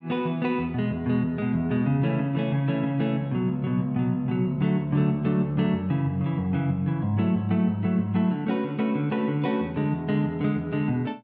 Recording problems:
none

